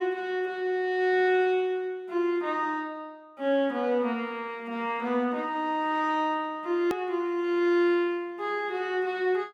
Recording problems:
hard cut with a click; at 7 s

